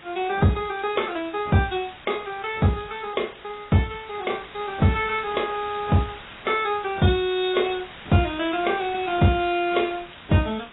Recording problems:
codec artefacts; AAC, log-spectral distance 13 dB, nothing above 3.8 kHz
hiss; SNR 18 dB

